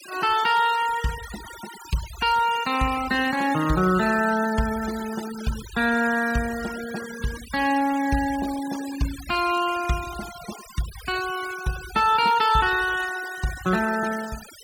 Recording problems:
denoising artefacts; signal-to-artefact ratio 14 dB

